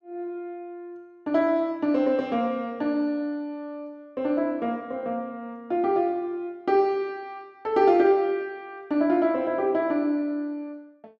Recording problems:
none

